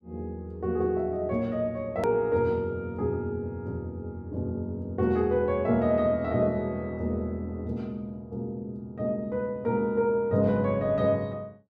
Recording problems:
edit click; at 2 s

